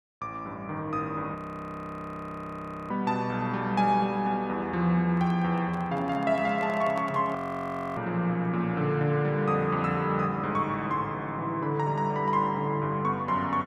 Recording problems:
audio freezing; at 1.5 s for 1.5 s and at 7.5 s for 0.5 s
microphone handling noise; from 5 to 7.5 s; peak -8 dB vs average level

